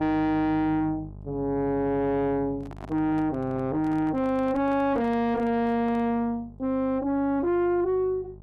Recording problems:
distorted audio; soft clipping, signal-to-distortion ratio 6 dB
hum; 50 Hz, harmonics up to 850 Hz, SNR 19 dB
handling noise; from 2.5 to 6 s; peak -11 dB vs average level

